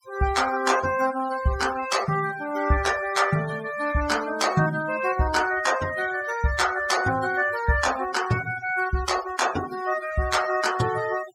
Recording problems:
noise reduction artefacts; signal-to-artefact ratio 13 dB

